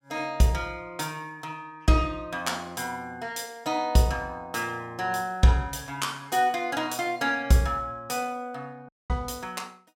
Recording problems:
dropout; at 9 s

